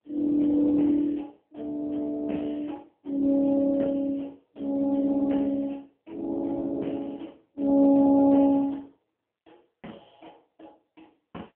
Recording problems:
telephone audio; 150 Hz to 3.5 kHz, AMR-NB

